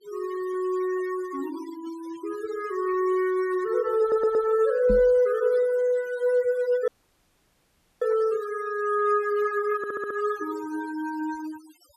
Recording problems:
noise reduction artefacts; signal-to-artefact ratio 21 dB
stutter; at 4 s and at 10 s
microphone bump; at 5 s; peak 0 dB vs average level
audio cutting out; at 7 s for 1 s

